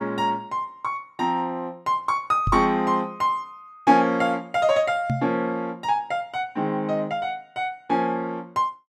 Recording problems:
knock on the microphone; at 2.5 s and at 5 s; peak +2 dB vs average level

